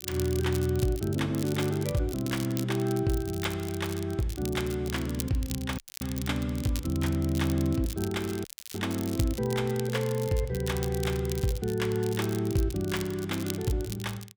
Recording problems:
crackling; vinyl, SNR 12 dB
dropout; at 6 s and at 8.5 s

